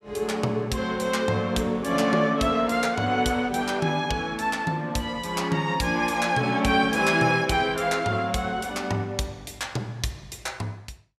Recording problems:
none

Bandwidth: 15 kHz